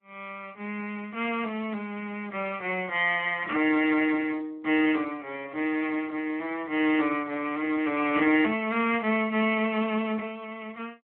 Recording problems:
phone line; 240 Hz to 3.4 kHz, Speex

